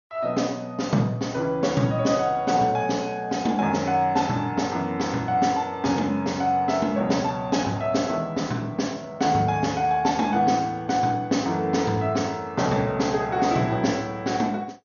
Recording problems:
lossy compression; MP2, log-spectral distance 2 dB, nothing above 6.7 kHz

